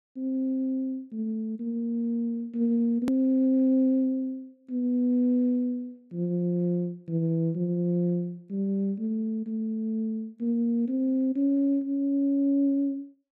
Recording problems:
click at an edit; at 3 s

